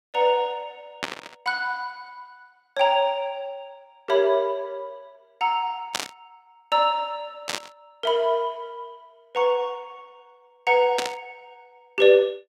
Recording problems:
burst of static; 4 times, first at 1 s; peak +2 dB vs average level

